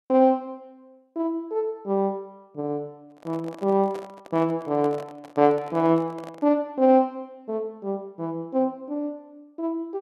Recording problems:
microphone handling noise; from 3 to 6.5 s; peak -10 dB vs average level

